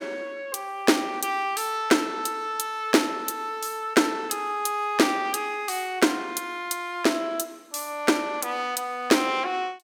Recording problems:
none

